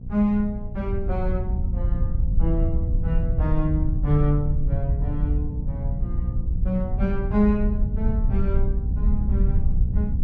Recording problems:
hum; 60 Hz, harmonics up to 480 Hz, SNR 8 dB
low-frequency rumble; below 72 Hz, SNR -1 dB

